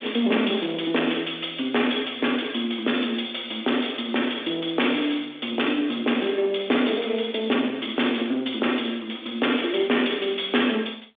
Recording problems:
telephone audio; 190 Hz to 3.6 kHz, G.726
distorted audio; soft clipping, signal-to-distortion ratio 13 dB

